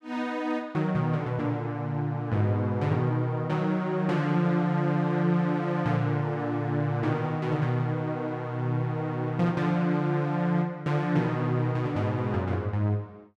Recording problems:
none

